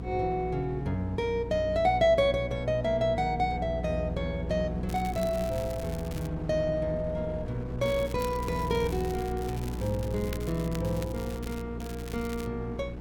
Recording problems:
hum; 60 Hz, harmonics up to 480 Hz, SNR 8 dB
wind on the microphone; below 370 Hz, SNR 16 dB
crackle; from 5 to 6.5 s, from 8 to 12 s and at 12 s; loose cable, SNR 17 dB

